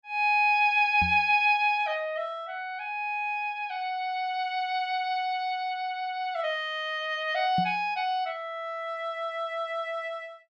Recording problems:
microphone bump; at 1 s and at 7.5 s; peak 0 dB vs average level

